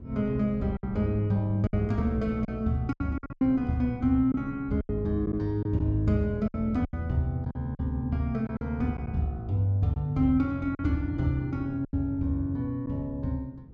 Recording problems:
wind on the microphone; below 220 Hz, SNR 18 dB
packet loss; 7% of the sound replaced, filled with silence

